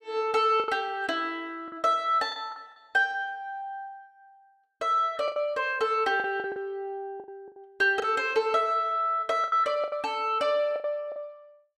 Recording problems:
packet loss; 9% of the sound replaced, filled with the last packet

